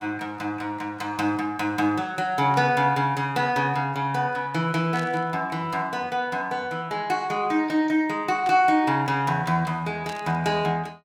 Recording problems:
burst of static; 4 times, first at 2.5 s; peak -10 dB vs average level

